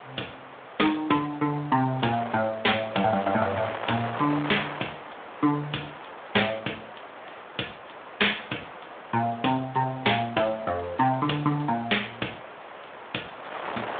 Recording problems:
phone line; 260 Hz to 3.6 kHz, Speex
wind on the microphone; below 1.8 kHz, SNR 12 dB

